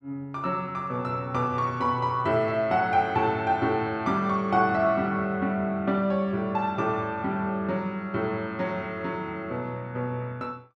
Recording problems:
none

